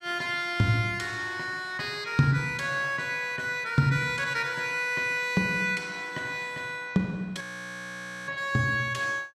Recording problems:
frozen audio; at 7.5 s for 1 s

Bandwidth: 13.5 kHz